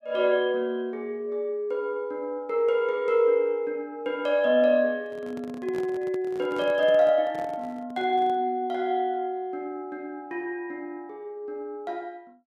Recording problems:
handling noise; from 5 to 8.5 s; peak -11 dB vs average level

